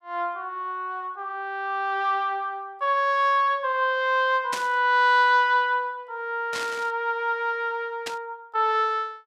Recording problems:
static burst; at 4.5 s, at 6.5 s and at 8 s; peak -3 dB vs average level

